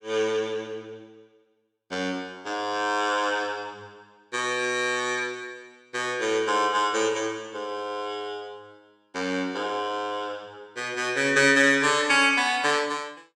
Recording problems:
none

